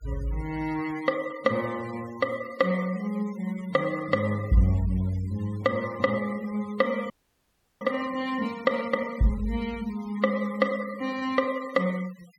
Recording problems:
noise reduction artefacts; signal-to-artefact ratio 19 dB
audio freezing; at 7 s for 0.5 s

